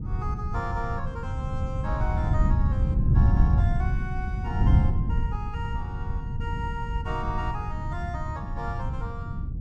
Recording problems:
wind on the microphone; below 130 Hz, SNR -8 dB

